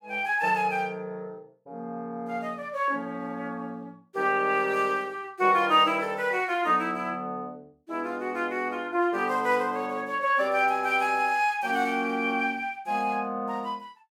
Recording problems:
none

